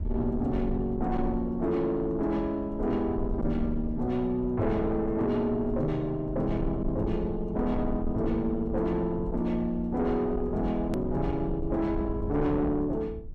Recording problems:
distortion; soft clipping, signal-to-distortion ratio 10 dB
rumble; below 98 Hz, SNR 9 dB
edit click; at 11 s

